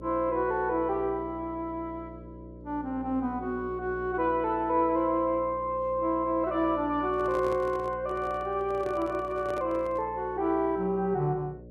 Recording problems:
hum; 60 Hz, harmonics up to 600 Hz, SNR 17 dB
handling noise; from 7 to 10 s; peak -6 dB vs average level

